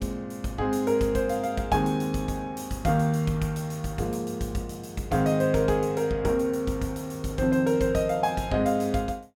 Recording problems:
none

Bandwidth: 17.5 kHz